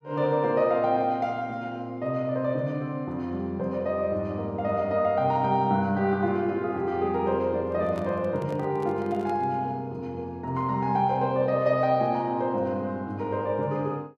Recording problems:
handling noise; from 7.5 to 9.5 s; peak -8 dB vs average level

